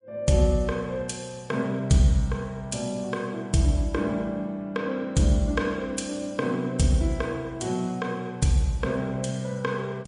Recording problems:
codec artefacts; MP3, log-spectral distance 2 dB, nothing above 10.4 kHz

